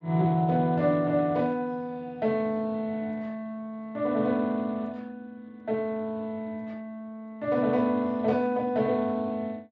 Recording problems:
codec artefacts; Speex, log-spectral distance 2 dB

